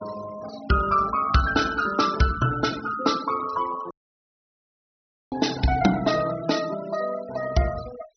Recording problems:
treble missing; nothing above 5.9 kHz
denoising artefacts; signal-to-artefact ratio 14 dB
dropout; at 4 s for 1.5 s

